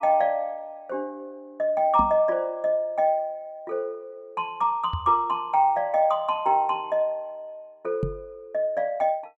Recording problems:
microphone bump; at 2 s, at 5 s and at 8 s; peak +1 dB vs average level

